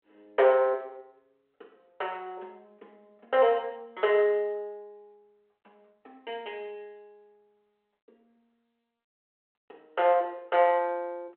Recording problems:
phone line; 300 Hz to 3.7 kHz, G.726

